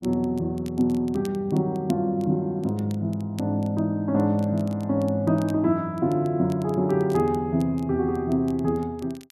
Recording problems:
crackle; vinyl, SNR 27 dB

